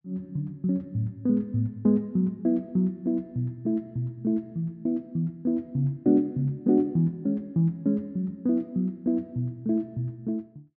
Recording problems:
none

